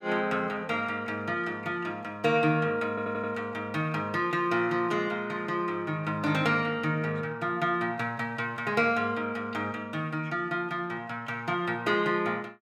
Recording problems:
stutter; at 3 s

